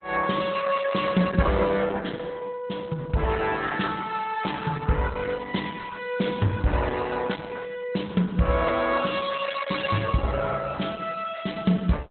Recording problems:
lossy codec; Opus, log-spectral distance 5 dB, nothing above 4 kHz

